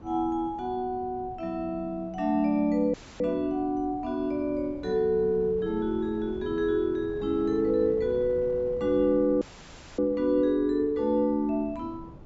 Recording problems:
treble cut off; nothing above 8 kHz
wind noise; below 300 Hz, SNR 19 dB
dropout; at 3 s and at 9.5 s for 0.5 s

